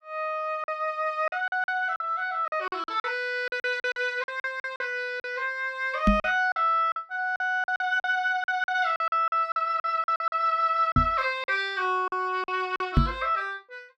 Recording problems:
packet loss; 12% of the sound replaced, filled with silence
knock on the microphone; at 6 s, at 11 s and at 13 s; peak +9 dB vs average level

